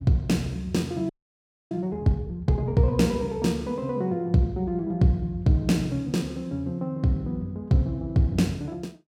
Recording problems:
frozen audio; at 1 s for 0.5 s

